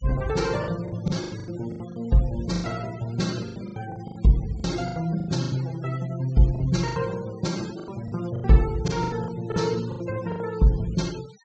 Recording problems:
low-pass filter; nothing above 8 kHz
noise reduction artefacts; signal-to-artefact ratio 19 dB
packet loss; 15% of the sound replaced, filled with the last packet

